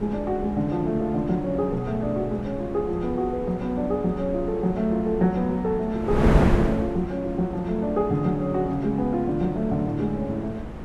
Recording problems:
wind on the microphone; below 410 Hz, SNR 6 dB

